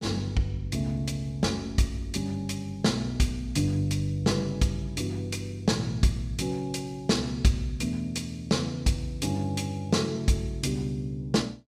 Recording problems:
none

